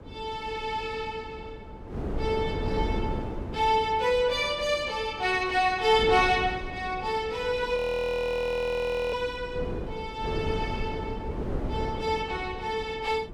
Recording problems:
wind on the microphone; below 400 Hz, SNR 9 dB
frozen audio; at 8 s for 1.5 s

